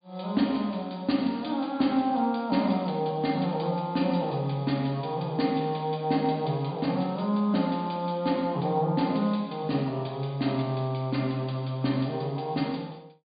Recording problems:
treble missing; nothing above 4.7 kHz

